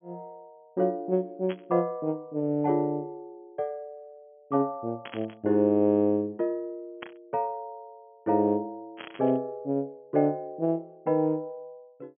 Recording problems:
treble missing; nothing above 3.3 kHz
static burst; 4 times, first at 1.5 s; peak -7 dB vs average level

